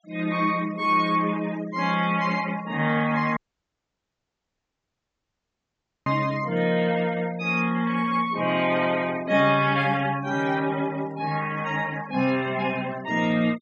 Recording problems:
treble cut off; nothing above 8 kHz
noise reduction artefacts; signal-to-artefact ratio 20 dB
dropout; at 3.5 s for 2.5 s

